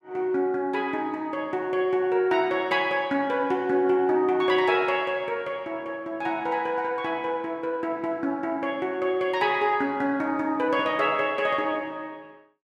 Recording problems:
none

